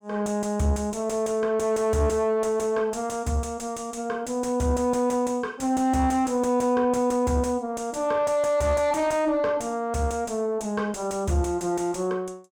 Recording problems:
distorted audio; soft clipping, signal-to-distortion ratio 11 dB

